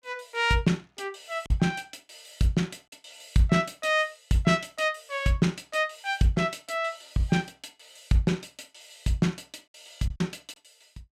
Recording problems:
packet loss; 2% of the sound replaced, filled with silence

